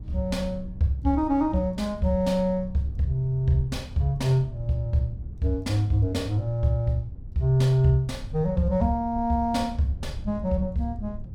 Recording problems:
rumble; below 100 Hz, SNR 14 dB

